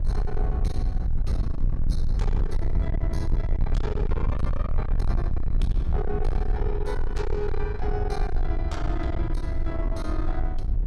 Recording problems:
distorted audio; soft clipping, signal-to-distortion ratio 7 dB
low-frequency rumble; below 66 Hz, SNR -6 dB

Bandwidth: 15 kHz